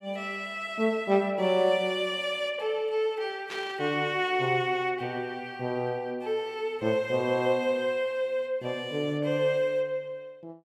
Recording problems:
static burst; at 3.5 s; peak -7 dB vs average level

